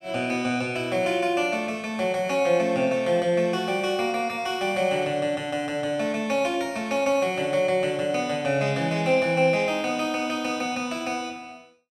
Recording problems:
none

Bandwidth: 14 kHz